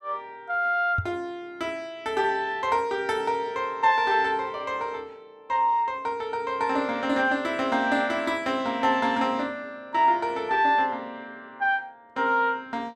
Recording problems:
microphone bump; at 1 s; peak 0 dB vs average level

